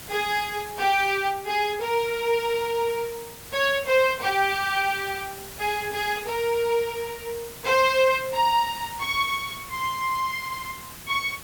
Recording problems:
background hiss; slope -2 dB per octave, SNR 15 dB

